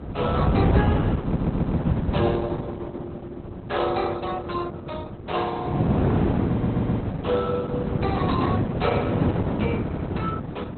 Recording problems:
lossy codec; Opus, log-spectral distance 3 dB, nothing above 4.1 kHz
wind noise; below 320 Hz, SNR -4 dB
stutter; at 1 s, at 6.5 s and at 10 s

